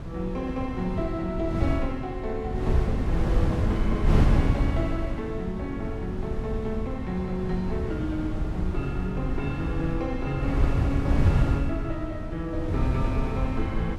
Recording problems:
wind on the microphone; below 150 Hz, SNR -3 dB

